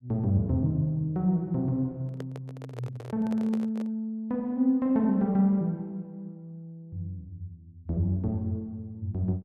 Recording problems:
microphone handling noise; from 2 to 4 s; peak -8 dB vs average level

